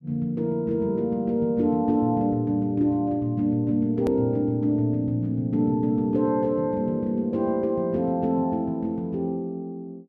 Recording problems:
click at an edit; at 4 s

